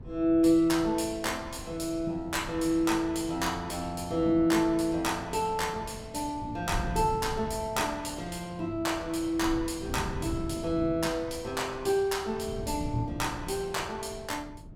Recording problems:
wind noise; below 180 Hz, SNR 13 dB

